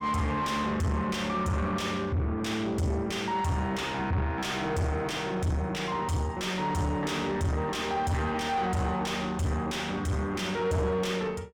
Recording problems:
distortion; soft clipping, signal-to-distortion ratio 6 dB

